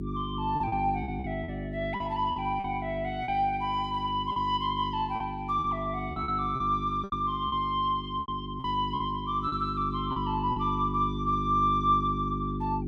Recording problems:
hum; 50 Hz, harmonics up to 400 Hz, SNR 6 dB
lost packets; 8% of the sound replaced, filled with repeated pitch periods

